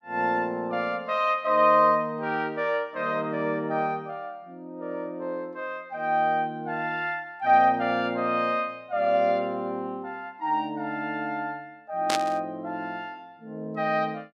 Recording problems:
burst of static; at 12 s; peak +3 dB vs average level

